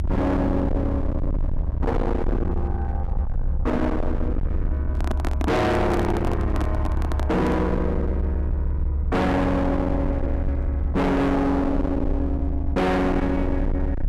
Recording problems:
distorted audio; hard clipping, uneven, signal-to-distortion ratio 6 dB
rumble; below 110 Hz, SNR 2 dB
microphone handling noise; from 5 to 7.5 s; peak -1 dB vs average level

